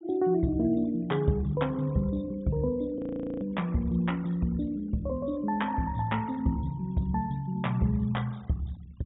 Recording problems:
treble cut off; nothing above 3.7 kHz
noise reduction artefacts; signal-to-artefact ratio 26 dB
frozen audio; at 3 s

